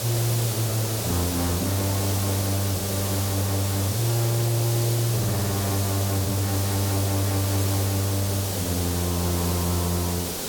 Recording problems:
distorted audio; hard clipping, signal-to-distortion ratio 6 dB
hiss; SNR 2 dB

